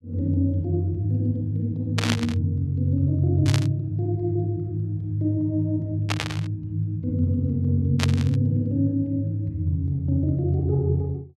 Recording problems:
static burst; 4 times, first at 2 s; peak +3 dB vs average level

